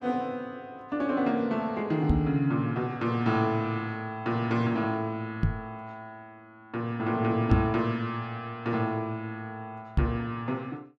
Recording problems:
knock on the microphone; 4 times, first at 2 s; peak +8 dB vs average level

